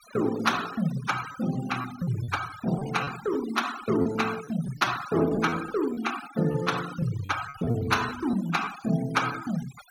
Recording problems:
noise reduction artefacts; signal-to-artefact ratio 12 dB
lost packets; 8% of the sound replaced, filled with repeated pitch periods

